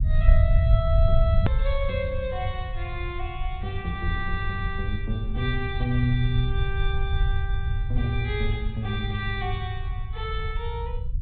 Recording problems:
treble missing; nothing above 4 kHz
rumble; below 80 Hz, SNR -2 dB
edit click; at 1.5 s

